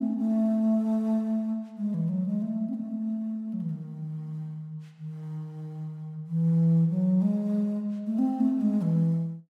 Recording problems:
none

